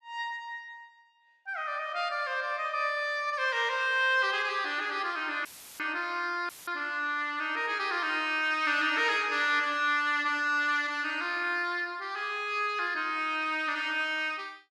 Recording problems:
dropout; at 5.5 s and at 6.5 s; filled with static

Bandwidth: 13.5 kHz